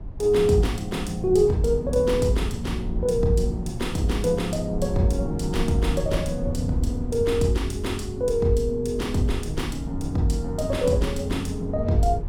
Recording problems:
rumble; below 100 Hz, SNR 9 dB

